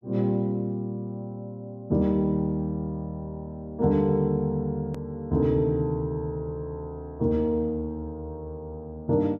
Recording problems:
click at an edit; at 5 s

